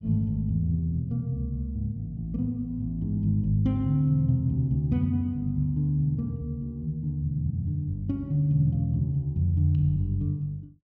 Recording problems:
none

